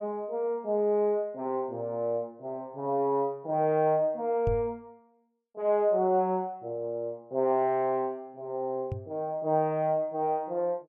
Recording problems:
knock on the microphone; at 4.5 s and at 9 s; peak 0 dB vs average level

